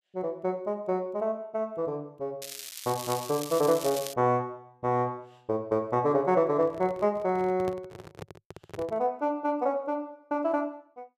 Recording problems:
crackle; from 2.5 to 4 s; loose cable, SNR 9 dB
handling noise; from 6.5 to 9 s; peak -5 dB vs average level

